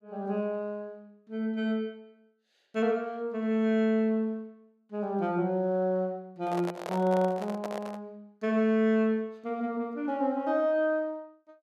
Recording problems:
handling noise; from 6.5 to 8 s; peak -3 dB vs average level

